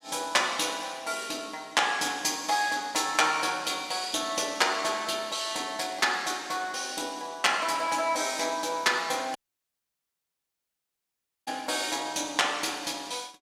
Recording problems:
dropout; at 9.5 s for 2 s

